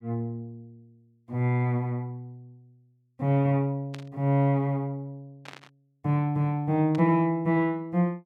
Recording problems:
static burst; at 4 s, at 5.5 s and at 7 s; peak -12 dB vs average level

